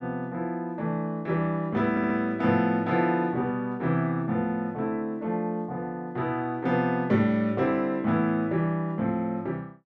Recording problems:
audio stuttering; at 2 s

